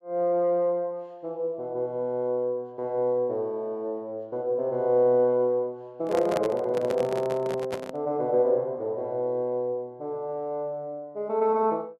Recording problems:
handling noise; from 6 to 8 s; peak 0 dB vs average level

